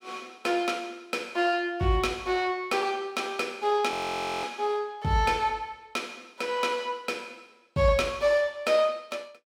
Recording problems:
audio freezing; at 4 s for 0.5 s

